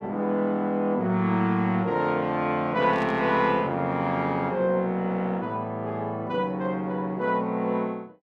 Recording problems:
static burst; at 3 s; peak -13 dB vs average level

